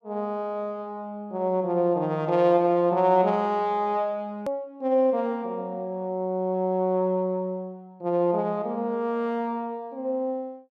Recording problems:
edit click; at 4.5 s

